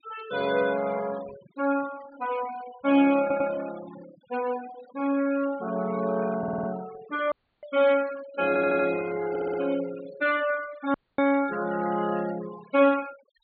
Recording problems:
treble cut off; nothing above 4.6 kHz
noise reduction artefacts; signal-to-artefact ratio 18 dB
audio stuttering; 4 times, first at 3 s
dropout; at 7.5 s and at 11 s

